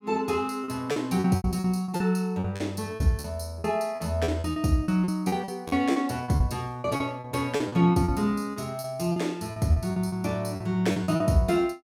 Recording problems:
packet loss; 15% of the sound replaced, filled with repeated pitch periods

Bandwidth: 16.5 kHz